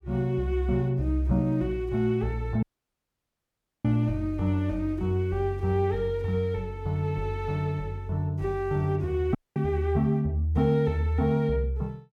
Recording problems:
audio cutting out; at 2.5 s for 1 s and at 9.5 s

